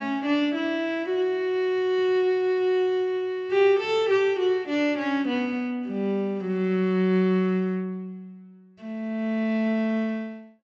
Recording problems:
treble cut off; nothing above 8 kHz

